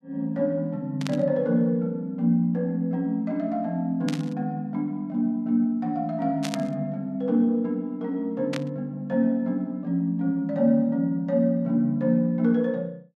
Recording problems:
burst of static; 4 times, first at 1 s; peak -3 dB vs average level

